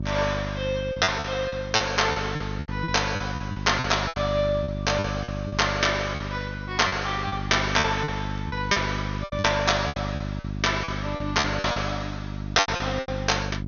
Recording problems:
treble missing; nothing above 6.5 kHz
hum; 50 Hz, harmonics up to 400 Hz, SNR 7 dB
packet loss; 13% of the sound replaced, filled with repeated pitch periods
crackling; from 8.5 to 9.5 s; loose cable, SNR 28 dB

